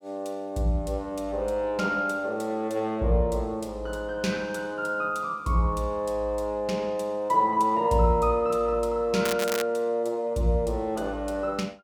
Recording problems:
crackling; at 9.5 s; loose cable, SNR 7 dB

